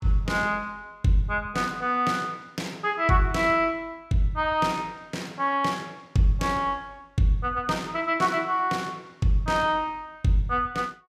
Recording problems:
none

